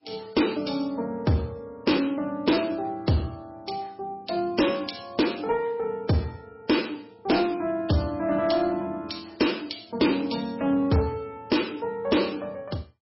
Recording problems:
lossy codec; MP3, log-spectral distance 5 dB, nothing above 5.5 kHz
distorted audio; soft clipping, signal-to-distortion ratio 11 dB

